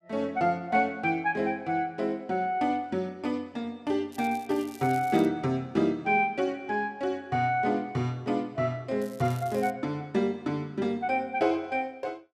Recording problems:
crackle; from 4 to 5.5 s and at 9 s; loose cable, SNR 22 dB

